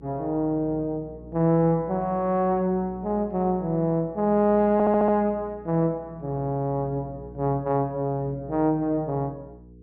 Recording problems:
hum; 60 Hz, harmonics up to 480 Hz, SNR 20 dB
audio stuttering; at 4.5 s

